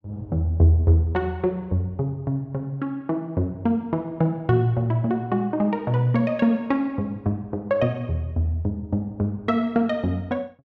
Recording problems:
none

